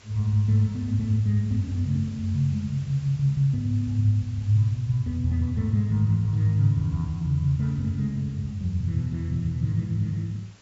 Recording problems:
low-pass filter; nothing above 8 kHz
background hiss; slope -2 dB per octave, SNR 27 dB

